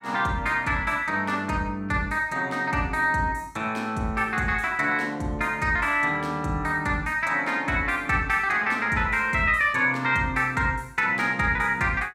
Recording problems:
none

